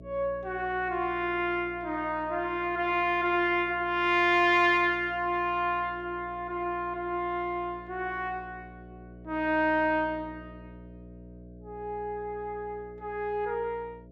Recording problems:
electrical hum; 60 Hz, harmonics up to 660 Hz, SNR 20 dB

